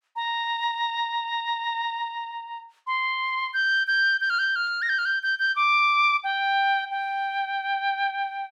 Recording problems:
none

